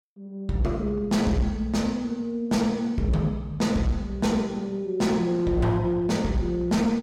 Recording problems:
distortion; hard clipping, uneven, signal-to-distortion ratio 12 dB

